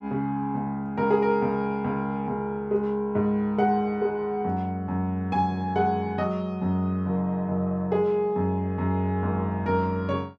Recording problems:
none

